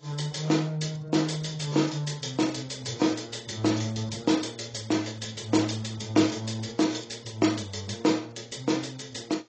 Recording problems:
lossy compression; AAC, log-spectral distance 7 dB, nothing above 8 kHz

